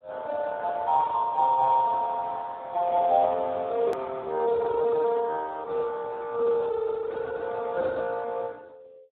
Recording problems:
telephone audio; 300 Hz to 2 kHz, Speex
click at an edit; at 4 s

